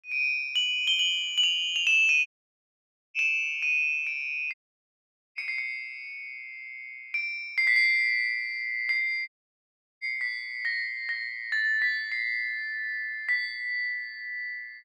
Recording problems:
audio cutting out; at 2.5 s for 1 s, at 4.5 s for 1 s and at 9.5 s for 0.5 s

